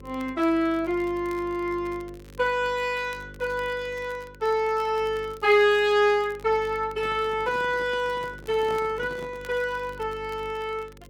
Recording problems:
hum; 50 Hz, harmonics up to 550 Hz, SNR 21 dB
crackle; vinyl, SNR 28 dB
microphone handling noise; from 7 to 9.5 s; peak -10 dB vs average level

